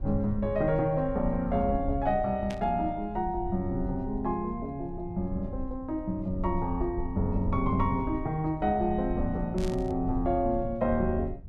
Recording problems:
rumble; below 82 Hz, SNR 9 dB
burst of static; at 2.5 s and at 9.5 s; peak -9 dB vs average level

